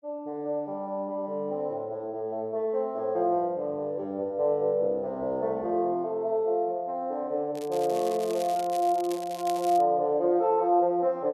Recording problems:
crackling; from 7.5 to 10 s; loose cable, SNR 17 dB

